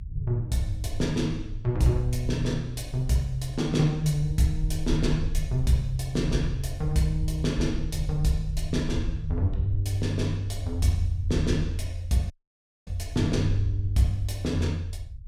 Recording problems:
rumble; below 78 Hz, SNR 7 dB
audio cutting out; at 12 s for 0.5 s

